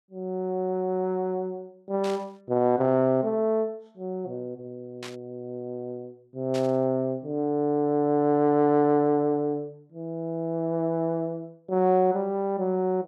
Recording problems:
burst of static; at 2 s, at 5 s and at 6.5 s; peak -9 dB vs average level

